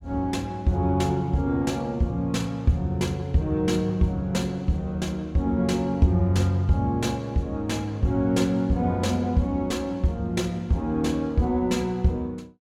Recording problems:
none

